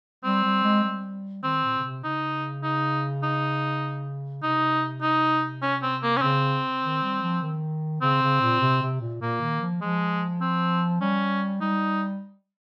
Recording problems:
none

